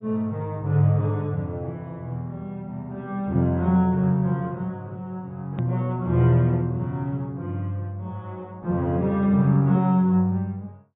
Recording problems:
treble missing; nothing above 4 kHz
edit click; at 5.5 s

